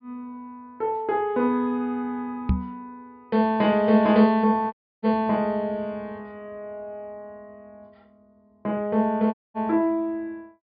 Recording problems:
treble cut off; nothing above 5.5 kHz
knock on the microphone; at 2.5 s; peak +5 dB vs average level
audio cutting out; at 4.5 s and at 9.5 s

